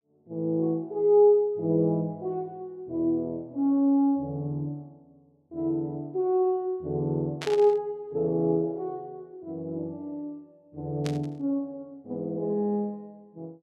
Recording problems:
burst of static; at 7.5 s and at 11 s; peak -4 dB vs average level

